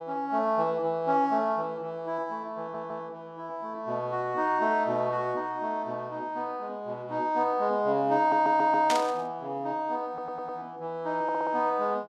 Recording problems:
audio stuttering; 4 times, first at 2.5 s
static burst; at 9 s; peak +2 dB vs average level

